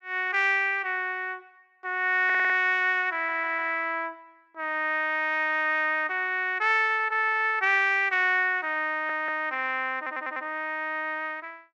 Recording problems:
audio stuttering; 4 times, first at 2.5 s

